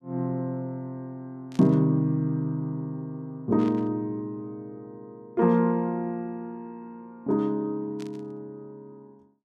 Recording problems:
static burst; at 1.5 s, at 3.5 s and at 8 s; peak -14 dB vs average level

